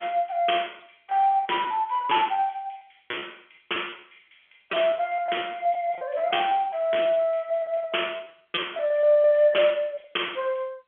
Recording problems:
phone line; 280 Hz to 3.4 kHz, G.711
lost packets; 15% of the sound replaced, filled with repeated pitch periods

